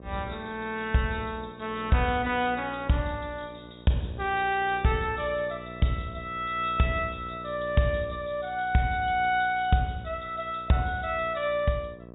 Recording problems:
treble cut off; nothing above 4 kHz
hum; 60 Hz, harmonics up to 1.3 kHz, SNR 17 dB

